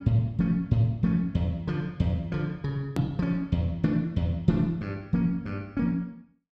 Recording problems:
edit click; at 3 s

